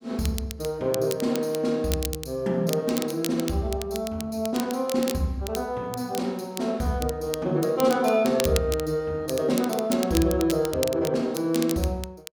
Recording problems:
crackle; vinyl, SNR 11 dB

